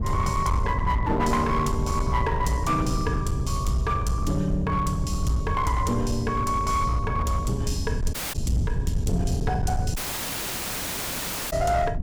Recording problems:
distortion; hard clipping, signal-to-distortion ratio 12 dB
rumble; below 120 Hz, SNR 3 dB
dropout; at 8 s and at 10 s for 1.5 s

